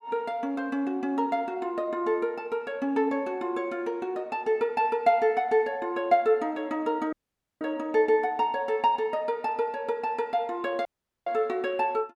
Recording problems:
dropout; at 7 s and at 11 s

